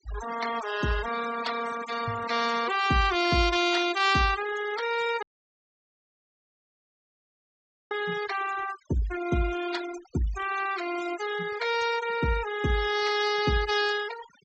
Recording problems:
treble cut off; nothing above 8 kHz
noise reduction artefacts; signal-to-artefact ratio 11 dB
dropout; at 5 s for 2.5 s

